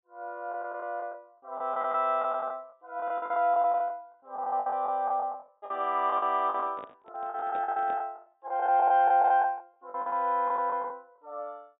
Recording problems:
treble cut off; nothing above 4 kHz
packet loss; 16% of the sound replaced, filled with the last packet
microphone handling noise; from 6.5 to 8 s; peak -11 dB vs average level

